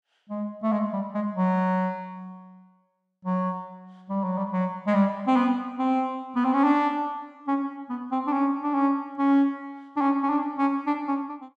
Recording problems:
none

